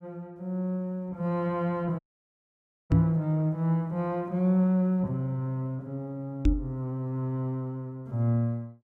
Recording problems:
dropout; at 2 s for 1 s
microphone bump; at 3 s and at 6.5 s; peak +8 dB vs average level

